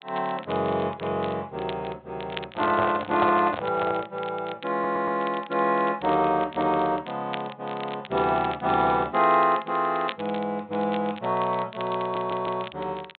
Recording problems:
low-pass filter; nothing above 4 kHz
crackle; vinyl, SNR 18 dB
microphone handling noise; from 2.5 to 4 s; peak +2 dB vs average level
stutter; at 4.5 s and at 12 s

